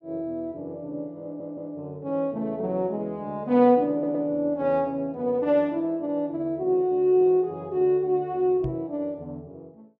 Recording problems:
stutter; at 1 s and at 4 s
knock on the microphone; at 8.5 s; peak -3 dB vs average level

